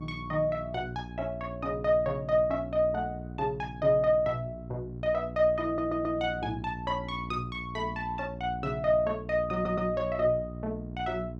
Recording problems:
electrical hum; 60 Hz, harmonics up to 720 Hz, SNR 11 dB
audio stuttering; at 5.5 s and at 9.5 s

